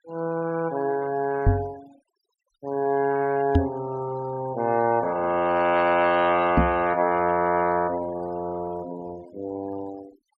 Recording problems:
noise reduction artefacts; signal-to-artefact ratio 21 dB
knock on the microphone; at 1.5 s, at 3.5 s and at 6.5 s; peak +8 dB vs average level

